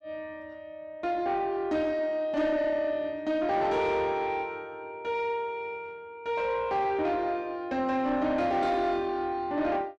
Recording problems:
distortion; soft clipping, signal-to-distortion ratio 12 dB

